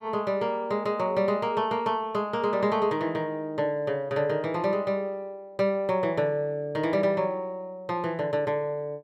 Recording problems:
none

